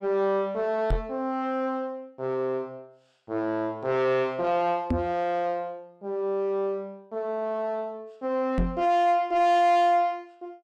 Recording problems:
distorted audio; soft clipping, signal-to-distortion ratio 10 dB
microphone thump; at 1 s, at 5 s and at 8.5 s; peak +4 dB vs average level

